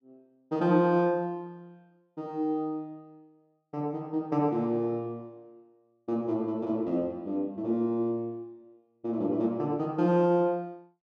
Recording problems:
none

